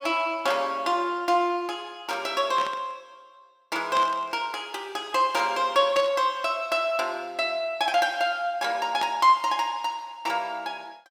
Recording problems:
burst of static; 4 times, first at 2.5 s; peak -4 dB vs average level

